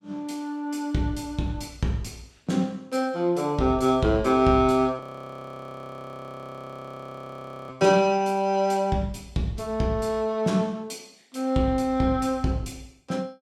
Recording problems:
audio freezing; at 5 s for 2.5 s

